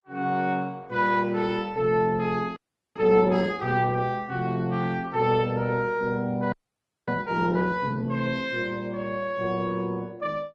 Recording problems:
lossy codec; Opus, then Opus, log-spectral distance 2 dB
frozen audio; at 2.5 s and at 6.5 s for 0.5 s

